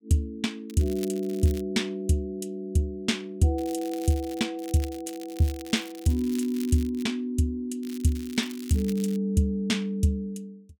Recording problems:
crackle; 4 times, first at 0.5 s; loose cable, SNR 18 dB

